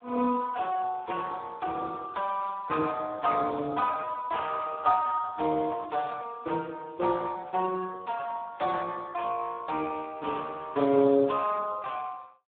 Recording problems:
telephone audio; 240 Hz to 2.7 kHz, Speex

